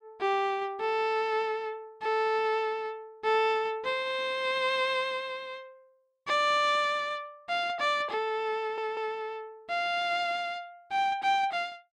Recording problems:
stutter; at 8.5 s

